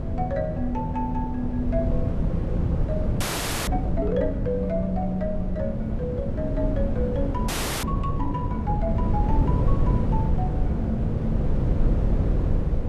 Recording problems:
wind noise; below 160 Hz, SNR -3 dB
frozen audio; at 3 s and at 7.5 s

